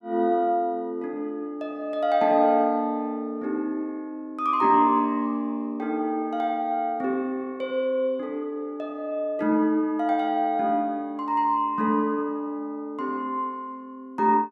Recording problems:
none

